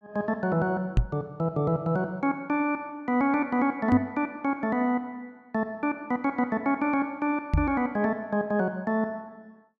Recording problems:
microphone bump; at 1 s, at 4 s and at 7.5 s; peak +8 dB vs average level

